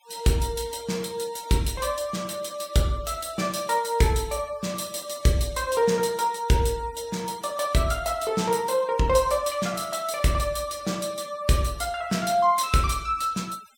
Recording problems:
noise reduction artefacts; signal-to-artefact ratio 22 dB

